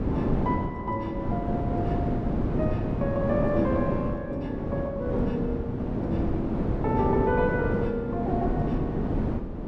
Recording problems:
wind noise; below 360 Hz, SNR -1 dB

